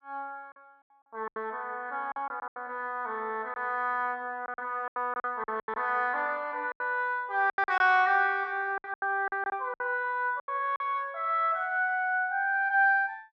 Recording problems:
packet loss; 10% of the sound replaced, filled with silence

